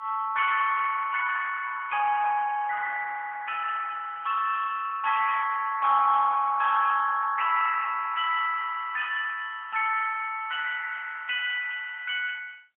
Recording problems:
telephone audio; 990 Hz to 2 kHz, AMR-NB, then MP3

